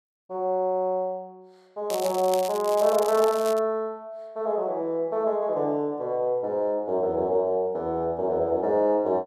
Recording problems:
crackling; from 2 to 3.5 s; loose cable, SNR 13 dB

